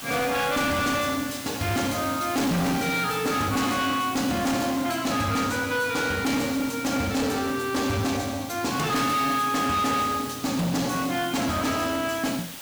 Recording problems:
distortion; hard clipping, signal-to-distortion ratio 8 dB
background hiss; slope 0 dB per octave, SNR 12 dB

